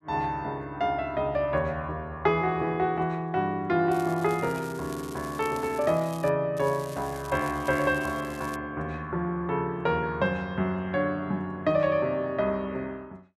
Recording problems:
crackling; from 4 to 6.5 s and from 6.5 to 8.5 s; loose cable, SNR 19 dB

